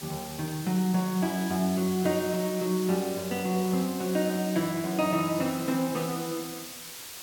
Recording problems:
background hiss; slope +1 dB per octave, SNR 11 dB

